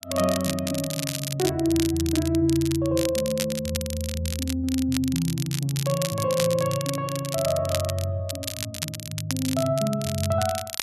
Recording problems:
crackling; vinyl, SNR 7 dB

